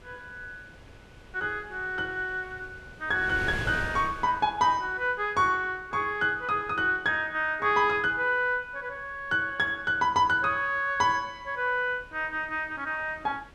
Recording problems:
wind on the microphone; below 1.1 kHz, SNR 19 dB

